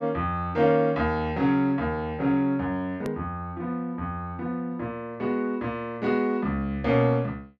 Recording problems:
hard cut with a click; at 3 s

